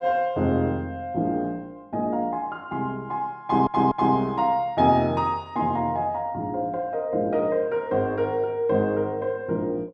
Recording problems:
audio stuttering; at 3.5 s

